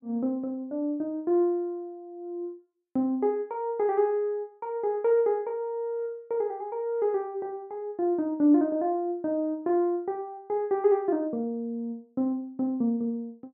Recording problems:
none

